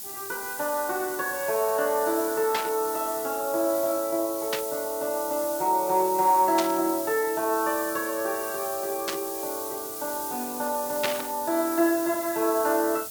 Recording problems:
hiss; SNR 7 dB
burst of static; 5 times, first at 2.5 s; peak +4 dB vs average level

